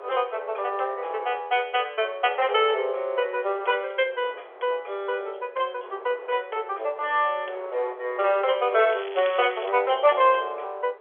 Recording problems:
telephone audio; 370 Hz to 3.4 kHz, G.711
wind noise; below 1.1 kHz, SNR 21 dB
crackling; at 9 s; loose cable, SNR 17 dB

